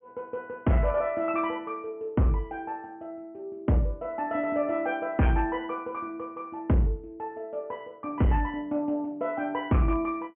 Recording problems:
low-pass filter; nothing above 3.1 kHz
distortion; hard clipping, signal-to-distortion ratio 11 dB

